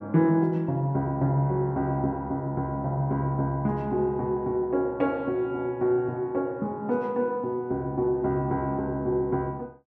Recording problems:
none

